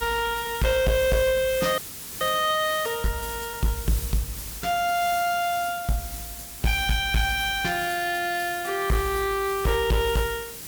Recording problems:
distortion; hard clipping, uneven, signal-to-distortion ratio 10 dB
hiss; SNR 10 dB
audio freezing; at 2 s

